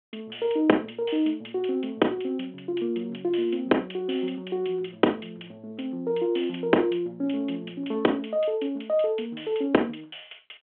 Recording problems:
telephone audio; 240 Hz to 3.3 kHz, G.726

